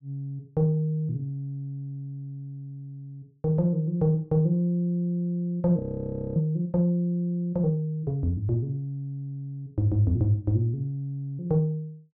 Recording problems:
frozen audio; at 6 s for 0.5 s

